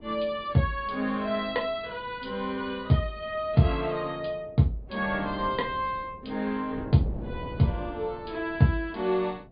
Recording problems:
treble cut off; nothing above 4.8 kHz
wind on the microphone; below 370 Hz, SNR 16 dB

